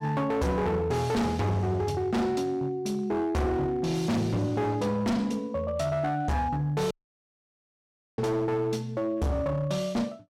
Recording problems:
distorted audio; hard clipping, signal-to-distortion ratio 6 dB
dropout; at 7 s for 1.5 s

